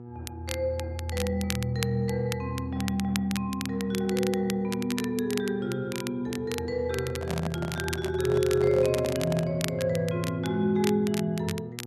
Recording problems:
hum; 60 Hz, harmonics up to 960 Hz, SNR 15 dB
crackling; vinyl, SNR 11 dB
handling noise; from 7 to 9.5 s; peak -2 dB vs average level

